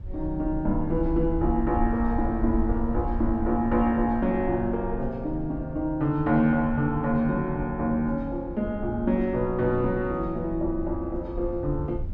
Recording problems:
rumble; below 70 Hz, SNR 10 dB

